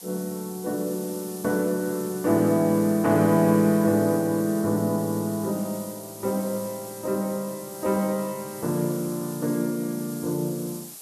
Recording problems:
background hiss; SNR 14 dB

